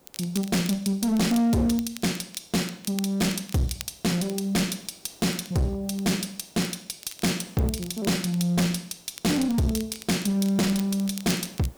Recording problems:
distorted audio; hard clipping, uneven, signal-to-distortion ratio 7 dB
background hiss; SNR 29 dB
crackling; vinyl, SNR 18 dB

